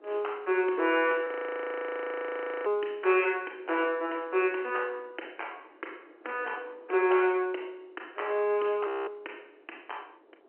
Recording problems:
telephone audio; 280 Hz to 3.1 kHz, G.711
wind on the microphone; below 1.2 kHz, SNR 23 dB
frozen audio; at 1.5 s for 1.5 s and at 9 s

